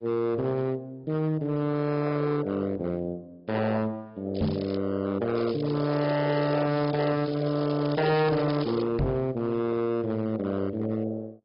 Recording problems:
low-pass filter; nothing above 5.2 kHz
codec artefacts; AAC, log-spectral distance 4 dB
distorted audio; hard clipping, signal-to-distortion ratio 7 dB
crackling; at 4.5 s and from 5.5 to 9 s; loose cable, SNR 18 dB
knock on the microphone; at 4.5 s and at 9 s; peak +4 dB vs average level

